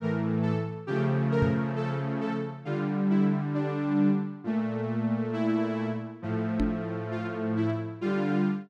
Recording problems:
microphone bump; at 1.5 s and at 6.5 s; peak +4 dB vs average level

